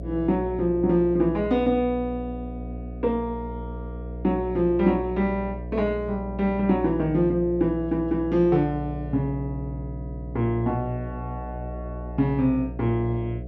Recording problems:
hum; 60 Hz, harmonics up to 720 Hz, SNR 11 dB

